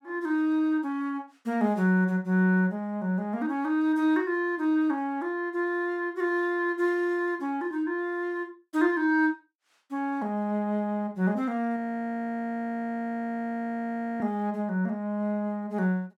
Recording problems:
frozen audio; at 12 s for 2.5 s

